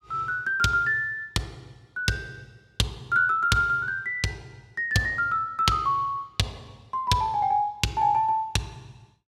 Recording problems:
none

